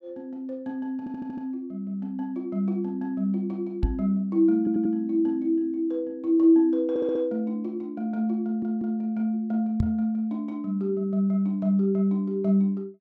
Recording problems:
audio stuttering; 4 times, first at 1 s
knock on the microphone; at 4 s and at 10 s; peak +4 dB vs average level

